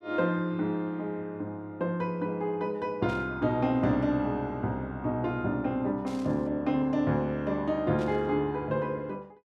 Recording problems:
burst of static; at 3 s, at 6 s and at 8 s; peak -14 dB vs average level

